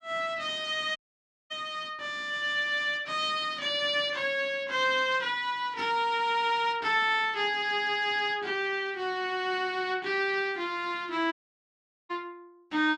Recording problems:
dropout; at 1 s for 0.5 s and at 11 s for 1 s

